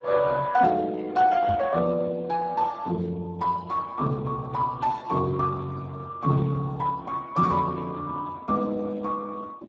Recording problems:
lossy compression; Speex, log-spectral distance 3 dB
knock on the microphone; at 1.5 s; peak -3 dB vs average level

